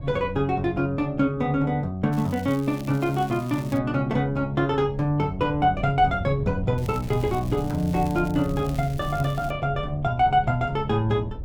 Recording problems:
wind noise; below 130 Hz, SNR 13 dB
crackling; from 2 to 4 s and from 7 to 9.5 s; loose cable, SNR 22 dB

